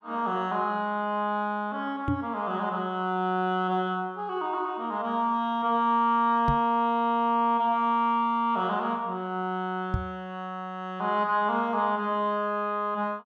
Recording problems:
microphone bump; at 2 s, at 6.5 s and at 10 s; peak +3 dB vs average level

